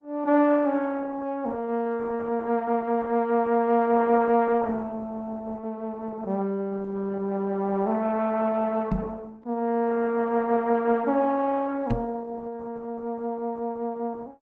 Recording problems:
lossy compression; Opus, log-spectral distance 2 dB
microphone bump; at 9 s and at 12 s; peak +2 dB vs average level

